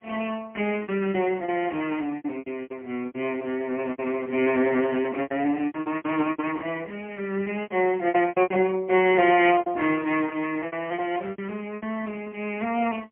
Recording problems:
phone line; 240 Hz to 3.9 kHz, AMR-NB, then MP3
lost packets; 12% of the sound replaced, filled with repeated pitch periods

